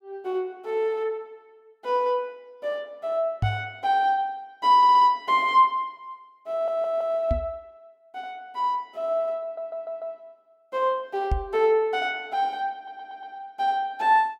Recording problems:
knock on the microphone; at 3.5 s, at 7.5 s and at 11 s; peak +3 dB vs average level
stutter; 4 times, first at 5 s

